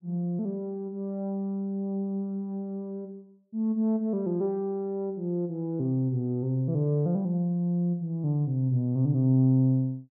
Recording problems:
none

